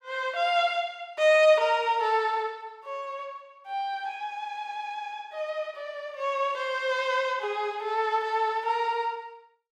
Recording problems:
none

